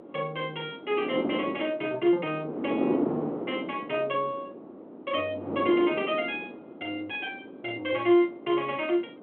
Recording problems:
phone line; 220 Hz to 3.3 kHz, G.726
wind noise; below 490 Hz, SNR 4 dB

